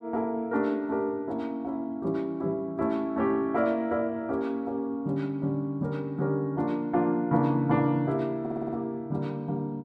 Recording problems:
audio stuttering; at 8.5 s

